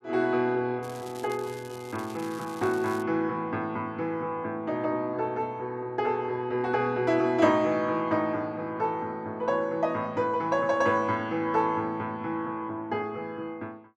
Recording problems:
crackle; from 1 to 3 s; loose cable, SNR 20 dB

